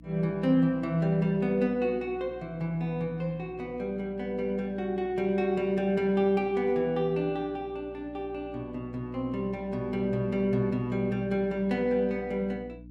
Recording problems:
electrical hum; 60 Hz, harmonics up to 300 Hz, SNR 20 dB

